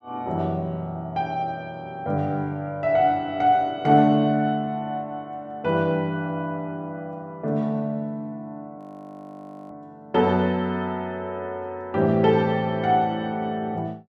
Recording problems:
frozen audio; at 9 s for 1 s

